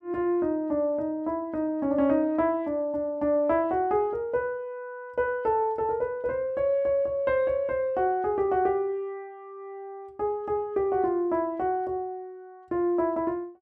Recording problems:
none

